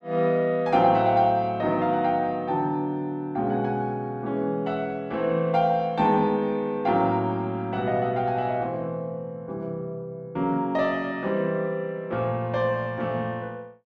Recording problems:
none

